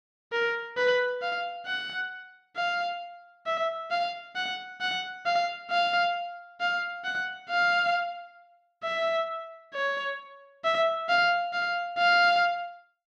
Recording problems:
none

